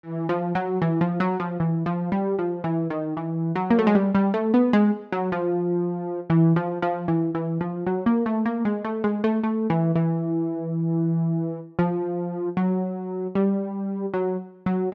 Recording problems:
none

